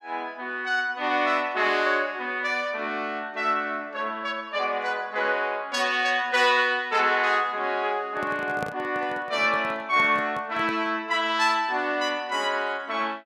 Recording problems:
handling noise; from 8 to 11 s; peak -4 dB vs average level

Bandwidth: 14.5 kHz